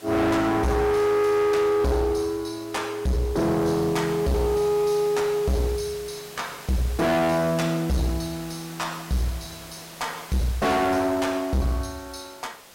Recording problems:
distortion; hard clipping, uneven, signal-to-distortion ratio 5 dB
hiss; slope -2 dB per octave, SNR 18 dB

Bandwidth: 16 kHz